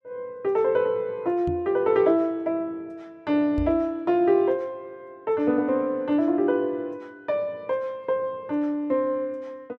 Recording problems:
microphone bump; at 1.5 s and at 3.5 s; peak -3 dB vs average level

